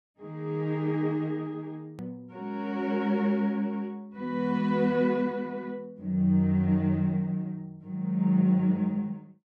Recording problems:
click at an edit; at 2 s

